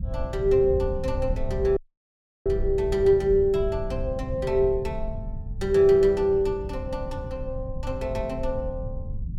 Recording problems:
low-frequency rumble; below 96 Hz, SNR 9 dB
audio cutting out; at 2 s for 0.5 s

